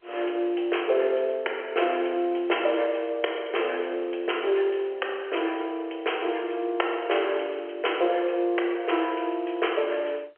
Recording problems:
phone line; 300 Hz to 3.2 kHz, G.711

